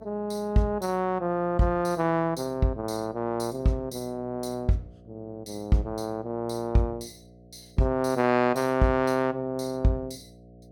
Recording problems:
electrical hum; 60 Hz, harmonics up to 720 Hz, SNR 24 dB

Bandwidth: 17 kHz